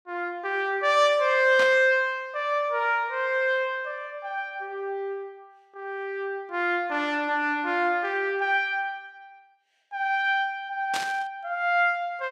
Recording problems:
static burst; at 1.5 s and at 11 s; peak -2 dB vs average level

